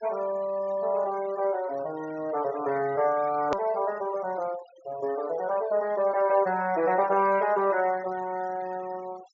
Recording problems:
treble cut off; nothing above 7.3 kHz
noise reduction artefacts; signal-to-artefact ratio 20 dB
hard cut with a click; at 3.5 s

